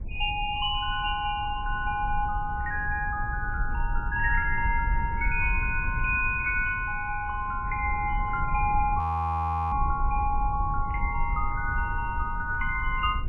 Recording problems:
codec artefacts; MP3, log-spectral distance 2 dB, nothing above 2.5 kHz
rumble; below 74 Hz, SNR 6 dB
frozen audio; at 9 s for 0.5 s

